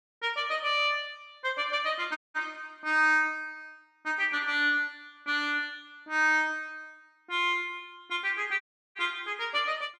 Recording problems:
dropout; at 2 s and at 8.5 s

